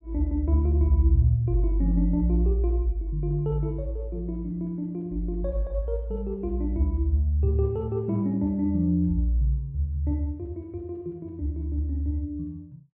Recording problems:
none

